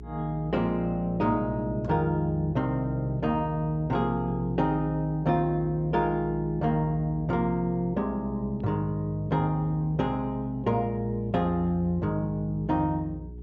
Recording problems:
low-pass filter; nothing above 8 kHz
hum; 60 Hz, harmonics up to 420 Hz, SNR 14 dB

